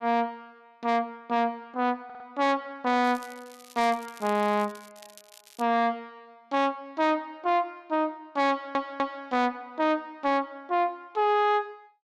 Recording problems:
distortion; soft clipping, signal-to-distortion ratio 10 dB
stutter; at 2 s and at 8.5 s
crackle; from 3 to 5.5 s; loose cable, SNR 22 dB

